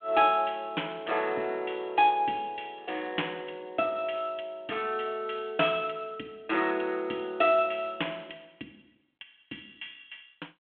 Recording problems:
telephone audio; 240 Hz to 3.4 kHz, G.726

